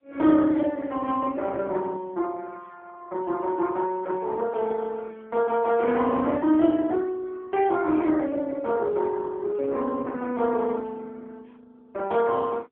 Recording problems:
telephone audio; 260 Hz to 3.5 kHz, AMR-NB

